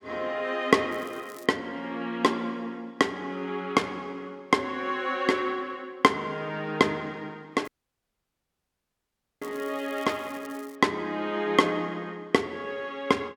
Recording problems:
crackle; at 1 s and from 7.5 to 11 s; loose cable, SNR 24 dB
audio cutting out; at 7.5 s for 1.5 s

